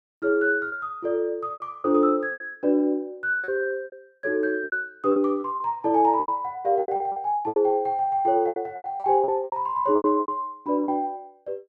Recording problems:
packet loss; 13% of the sound replaced, filled with repeated pitch periods

